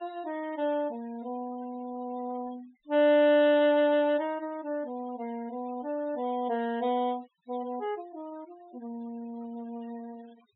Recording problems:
low-pass filter; nothing above 3.8 kHz
noise reduction artefacts; signal-to-artefact ratio 26 dB

